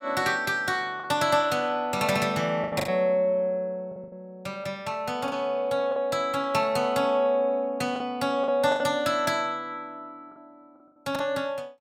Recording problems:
packet loss; 6% of the sound replaced, filled with the last packet

